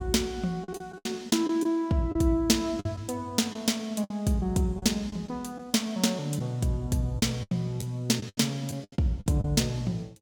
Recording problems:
lost packets; 9% of the sound replaced, filled with the last packet

